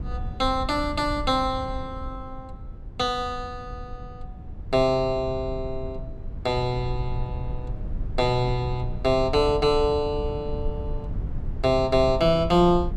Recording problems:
rumble; below 90 Hz, SNR 10 dB

